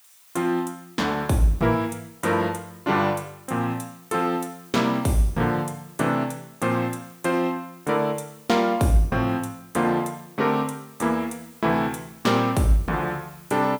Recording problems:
background hiss; SNR 25 dB

